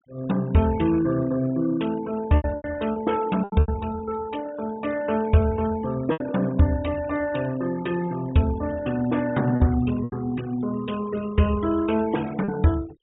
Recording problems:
low-pass filter; nothing above 4 kHz
denoising artefacts; signal-to-artefact ratio 18 dB
packet loss; 5% of the sound replaced, filled with repeated pitch periods

